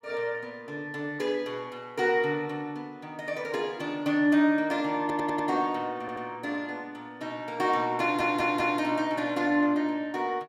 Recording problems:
stutter; at 5 s, at 6 s and at 8 s

